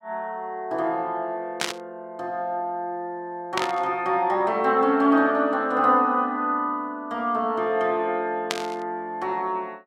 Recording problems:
static burst; at 1.5 s, at 3.5 s and at 8.5 s; peak +3 dB vs average level

